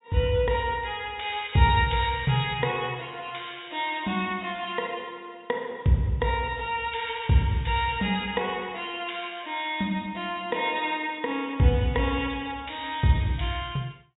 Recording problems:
treble missing; nothing above 4 kHz

